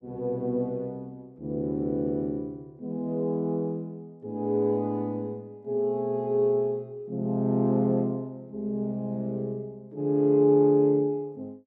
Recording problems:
none

